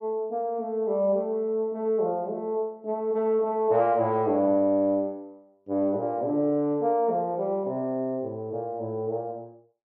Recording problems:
none

